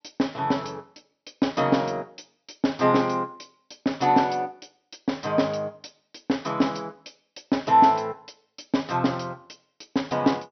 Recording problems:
low-pass filter; nothing above 6 kHz

